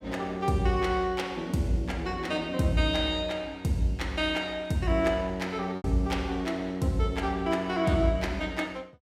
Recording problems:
lost packets; 0.9% of the sound replaced, filled with repeated pitch periods

